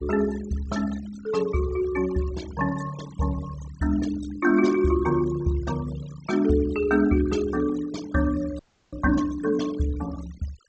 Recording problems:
low-pass filter; nothing above 8 kHz
denoising artefacts; signal-to-artefact ratio 17 dB
audio freezing; at 8.5 s

